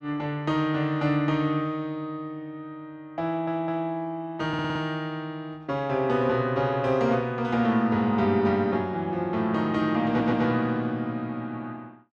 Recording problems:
stutter; at 3.5 s, at 4.5 s and at 10 s

